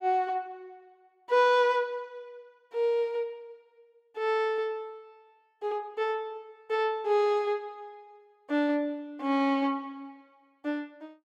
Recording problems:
none

